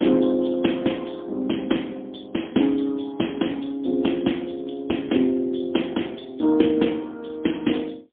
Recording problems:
phone line; 190 Hz to 3.4 kHz, AMR-NB, then MP3

